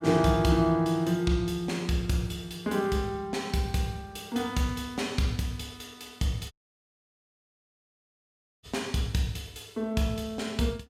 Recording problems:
audio cutting out; at 6.5 s for 2 s

